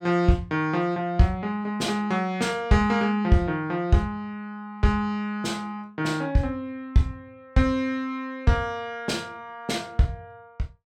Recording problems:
none

